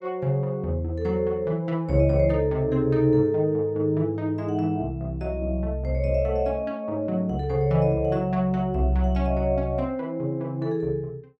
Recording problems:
none

